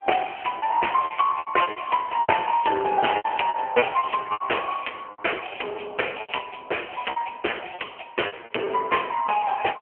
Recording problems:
telephone audio; 320 Hz to 3.1 kHz, AMR-NB
lost packets; 13% of the sound replaced, filled with repeated pitch periods

